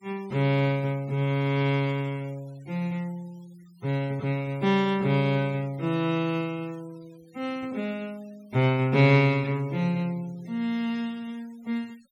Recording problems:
denoising artefacts; signal-to-artefact ratio 27 dB

